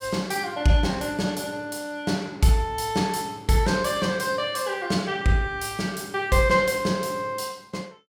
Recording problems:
none

